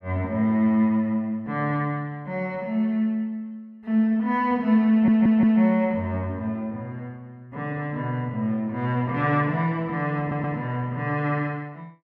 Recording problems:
audio stuttering; at 5 s and at 10 s

